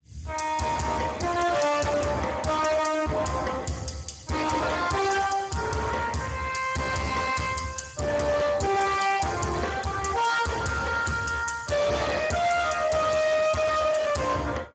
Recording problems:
lossy compression; Speex, log-spectral distance 5 dB, nothing above 7.6 kHz
distorted audio; hard clipping, signal-to-distortion ratio 7 dB

